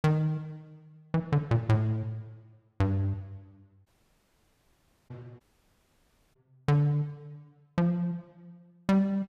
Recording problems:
audio cutting out; at 4 s for 1 s and at 5.5 s for 1 s

